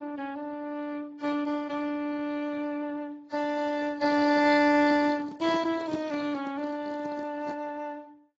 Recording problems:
codec artefacts; Speex, then AAC, log-spectral distance 3 dB, nothing above 7.3 kHz
microphone handling noise; from 5 to 7.5 s; peak -2 dB vs average level

